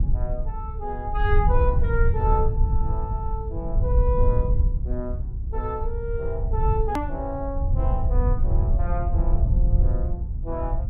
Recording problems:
low-frequency rumble; below 76 Hz, SNR -5 dB
edit click; at 7 s

